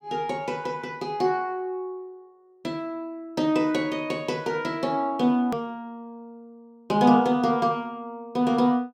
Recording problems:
click at an edit; at 5.5 s

